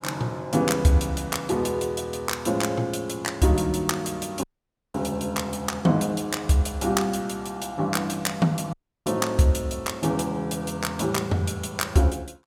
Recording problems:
dropout; at 4.5 s for 0.5 s and at 8.5 s

